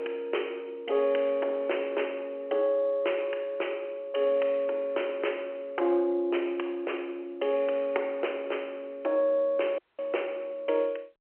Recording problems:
phone line; 300 Hz to 3.1 kHz, G.711
dropout; at 10 s

